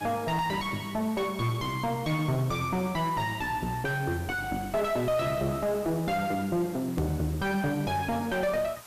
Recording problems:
distortion; soft clipping, signal-to-distortion ratio 4 dB
background hiss; SNR 18 dB
edit click; at 7 s

